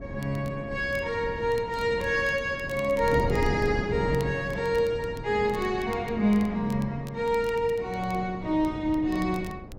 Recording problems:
wind on the microphone; below 330 Hz, SNR 10 dB
crackling; vinyl, SNR 25 dB

